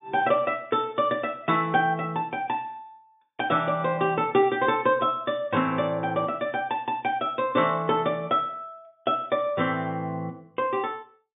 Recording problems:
treble cut off; nothing above 3.6 kHz

